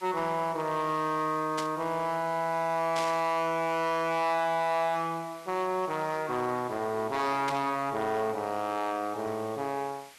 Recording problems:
distortion; hard clipping, uneven, signal-to-distortion ratio 11 dB
hiss; SNR 21 dB
static burst; at 1.5 s, at 3 s and at 7.5 s; peak -2 dB vs average level

